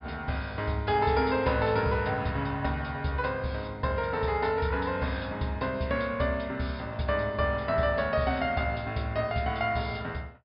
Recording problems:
treble missing; nothing above 5.5 kHz

